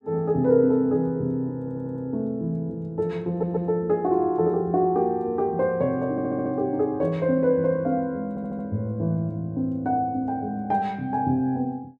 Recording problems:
stutter; 4 times, first at 1.5 s

